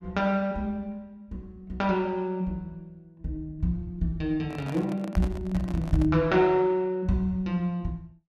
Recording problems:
handling noise; from 4.5 to 6 s; peak -6 dB vs average level

